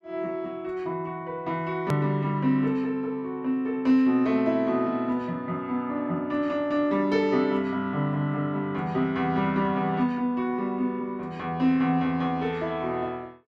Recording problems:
hard cut with a click; at 2 s

